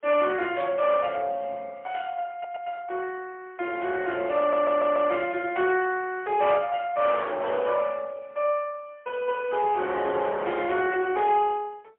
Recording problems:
telephone audio; 300 Hz to 3.4 kHz, AMR-NB, then MP3
distortion; hard clipping, signal-to-distortion ratio 11 dB
stutter; at 2.5 s and at 4.5 s

